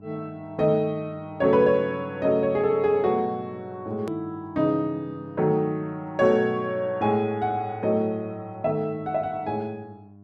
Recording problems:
hum; 50 Hz, harmonics up to 1 kHz, SNR 21 dB
click at an edit; at 4 s

